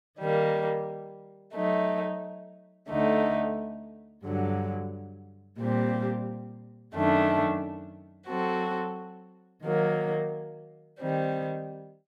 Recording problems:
none

